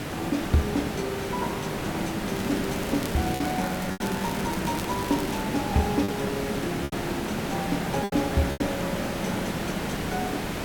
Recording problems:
background hiss; slope -5 dB per octave, SNR 0 dB
packet loss; 4% of the sound replaced, filled with repeated pitch periods
crackling; from 2.5 to 5.5 s; loose cable, SNR 12 dB

